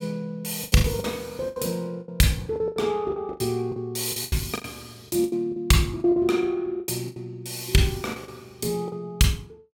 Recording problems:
lost packets; 14% of the sound replaced, filled with the last packet

